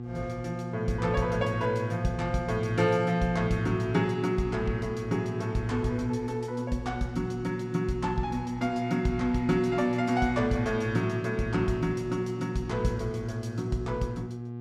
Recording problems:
hum; 60 Hz, harmonics up to 840 Hz, SNR 8 dB

